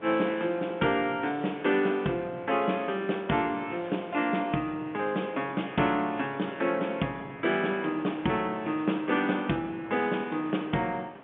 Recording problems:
phone line; 150 Hz to 3.6 kHz, G.711
wind noise; below 1.1 kHz, SNR 21 dB

